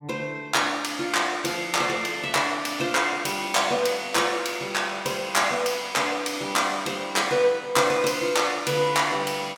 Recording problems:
none

